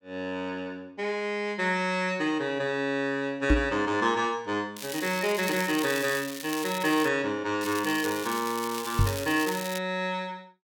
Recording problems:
microphone bump; at 3.5 s and at 9 s; peak +9 dB vs average level
crackle; from 5 to 7 s and from 7.5 to 10 s; loose cable, SNR 9 dB

